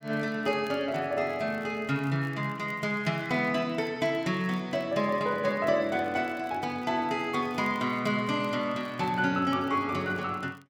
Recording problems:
crackle; vinyl, SNR 30 dB

